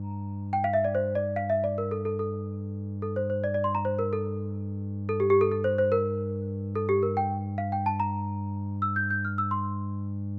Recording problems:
hum; 50 Hz, harmonics up to 500 Hz, SNR 5 dB

